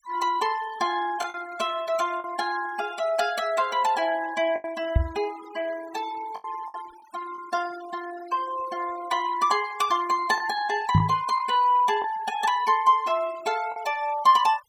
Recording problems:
noise reduction artefacts; signal-to-artefact ratio 17 dB
lost packets; 3% of the sound replaced, filled with the last packet
knock on the microphone; at 5 s and at 11 s; peak +9 dB vs average level

